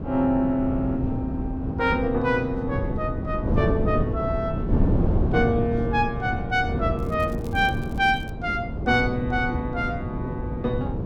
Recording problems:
wind noise; below 260 Hz, SNR 2 dB
crackle; from 7 to 8.5 s; loose cable, SNR 26 dB

